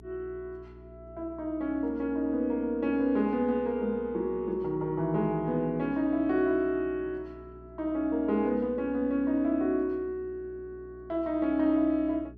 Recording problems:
hum; 60 Hz, harmonics up to 420 Hz, SNR 22 dB

